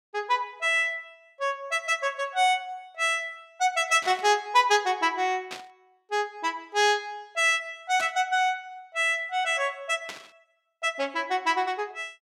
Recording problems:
burst of static; 4 times, first at 4 s; peak -7 dB vs average level

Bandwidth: 16.5 kHz